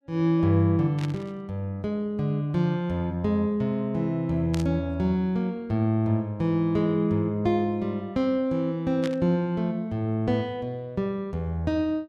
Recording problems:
burst of static; at 1 s, at 4.5 s and at 9 s; peak -7 dB vs average level

